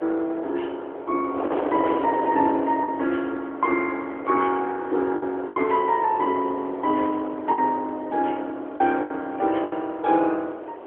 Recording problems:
phone line; 260 Hz to 3.4 kHz, AMR-NB
wind noise; below 780 Hz, SNR 9 dB
packet loss; 5% of the sound replaced, filled with the last packet

